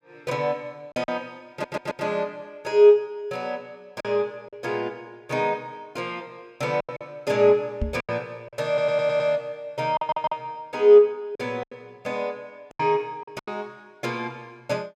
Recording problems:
packet loss; 6% of the sound replaced, filled with silence
audio stuttering; at 1.5 s, at 8.5 s and at 10 s
microphone bump; at 8 s; peak +1 dB vs average level

